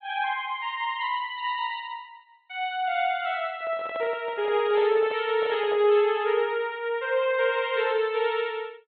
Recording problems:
treble missing; nothing above 4 kHz
handling noise; from 3.5 to 6 s; peak -9 dB vs average level

